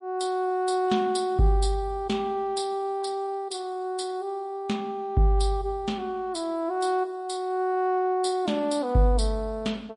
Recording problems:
lossy compression; MP3, log-spectral distance 2 dB, nothing above 10.1 kHz

